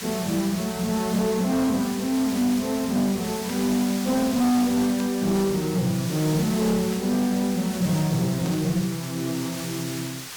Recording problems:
distortion; soft clipping, signal-to-distortion ratio 10 dB
hiss; slope +1 dB per octave, SNR 10 dB
burst of static; 4 times, first at 3.5 s; peak -11 dB vs average level

